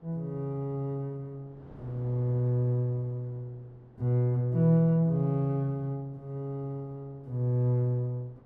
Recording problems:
wind on the microphone; below 520 Hz, SNR 27 dB

